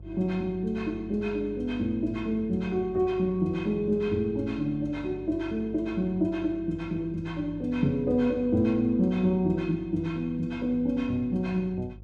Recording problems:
hum; 50 Hz, harmonics up to 400 Hz, SNR 18 dB

